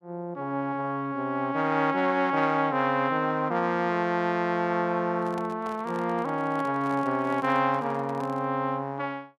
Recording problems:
microphone handling noise; from 5 to 8.5 s; peak -10 dB vs average level

